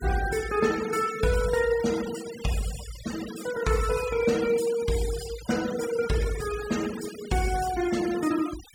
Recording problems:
denoising artefacts; signal-to-artefact ratio 13 dB

